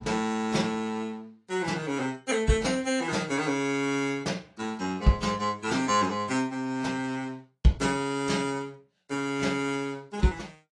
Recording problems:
lossy compression; AAC, log-spectral distance 3 dB

